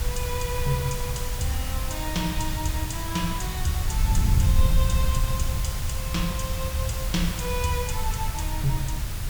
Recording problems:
hiss; slope -1 dB per octave, SNR 4 dB
wind noise; below 86 Hz, SNR -2 dB

